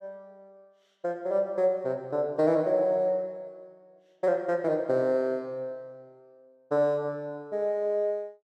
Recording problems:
none

